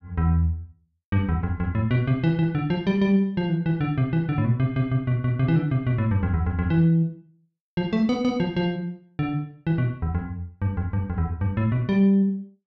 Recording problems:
none

